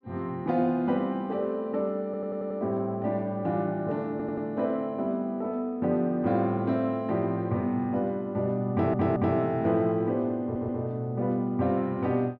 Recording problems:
audio stuttering; 4 times, first at 2 s

